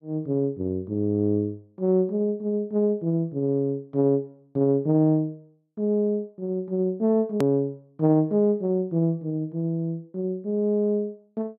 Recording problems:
click at an edit; at 7.5 s

